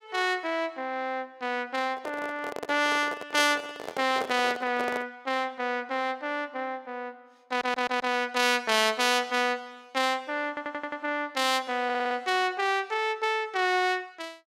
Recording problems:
microphone handling noise; from 2 to 5 s; peak -2 dB vs average level
stutter; at 7.5 s, at 10 s and at 12 s

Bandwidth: 16 kHz